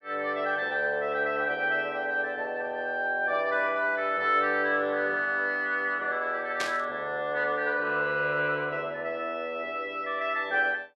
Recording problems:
static burst; at 6.5 s; peak 0 dB vs average level

